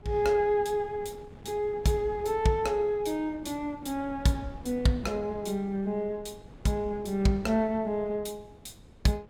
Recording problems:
wind on the microphone; below 320 Hz, SNR 20 dB

